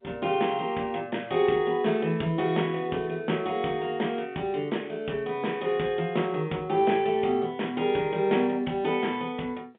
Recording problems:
phone line; 170 Hz to 3.6 kHz, G.711

